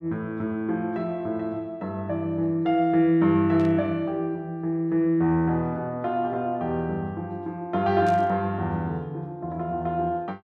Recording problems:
static burst; at 3.5 s and at 8 s; peak -13 dB vs average level

